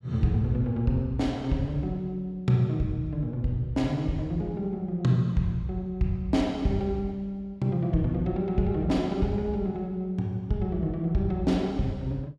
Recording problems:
none

